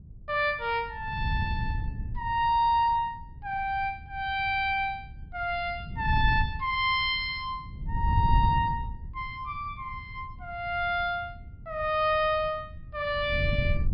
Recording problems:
treble cut off; nothing above 5.5 kHz
wind noise; below 110 Hz, SNR 7 dB

